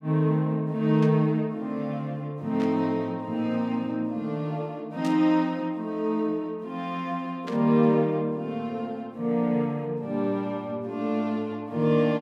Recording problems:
static burst; 4 times, first at 1 s; peak -10 dB vs average level

